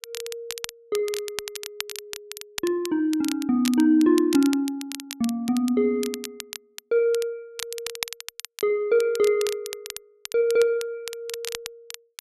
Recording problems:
crackling; vinyl, SNR 13 dB

